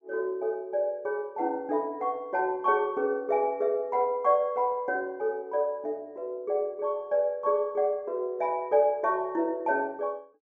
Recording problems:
treble missing; nothing above 7 kHz

